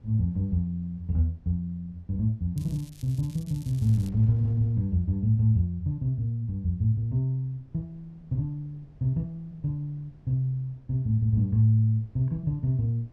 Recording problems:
wind on the microphone; below 180 Hz, SNR 26 dB
crackling; from 2.5 to 4 s; loose cable, SNR 25 dB

